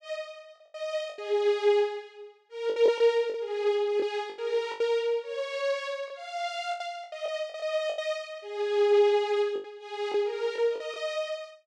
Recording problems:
packet loss; 9% of the sound replaced, filled with the last packet

